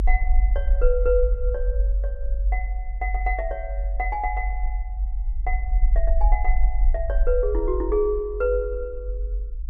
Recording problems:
low-frequency rumble; below 48 Hz, SNR -2 dB

